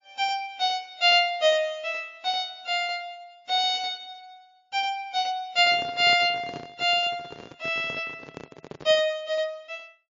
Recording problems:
lossy compression; MP3, log-spectral distance 2 dB, nothing above 6.9 kHz
handling noise; from 5.5 to 9 s; peak -10 dB vs average level

